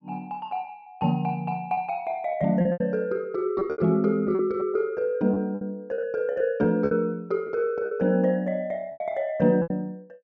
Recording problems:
packet loss; 9% of the sound replaced, filled with repeated pitch periods

